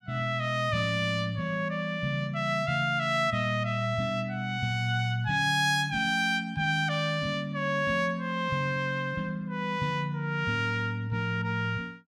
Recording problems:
none

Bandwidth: 16 kHz